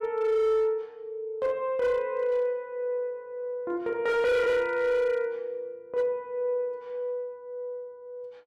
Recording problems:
distortion; hard clipping, signal-to-distortion ratio 11 dB

